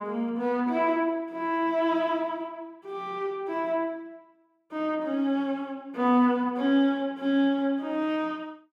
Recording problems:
none

